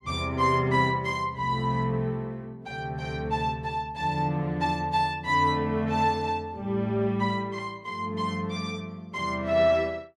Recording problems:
none

